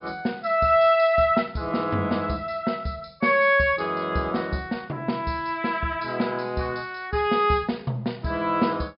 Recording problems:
treble cut off; nothing above 5.5 kHz

